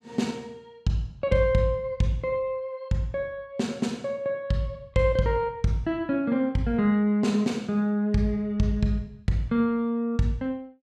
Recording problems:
none

